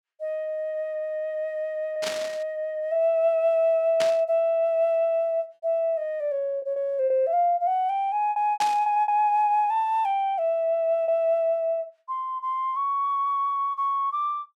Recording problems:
packet loss; 3% of the sound replaced, filled with repeated pitch periods
burst of static; at 2 s, at 4 s and at 8.5 s; peak -1 dB vs average level

